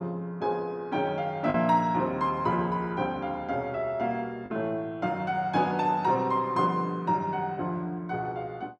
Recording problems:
packet loss; 0.9% of the sound replaced, filled with the last packet

